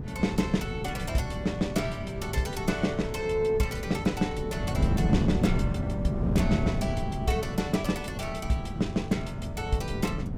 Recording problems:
wind on the microphone; below 220 Hz, SNR 2 dB

